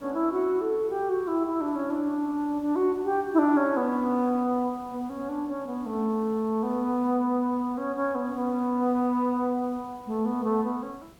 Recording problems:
hiss; slope -5 dB per octave, SNR 27 dB

